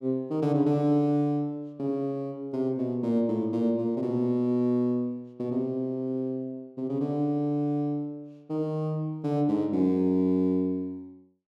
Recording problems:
none

